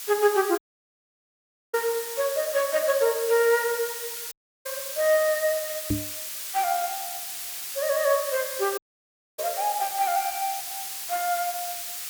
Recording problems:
hiss; slope +4 dB per octave, SNR 6 dB
audio cutting out; at 0.5 s for 1 s, at 4.5 s and at 9 s for 0.5 s
microphone thump; at 6 s and at 9.5 s; peak +3 dB vs average level

